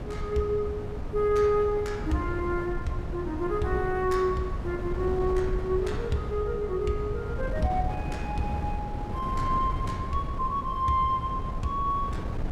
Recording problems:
wind noise; below 190 Hz, SNR 5 dB

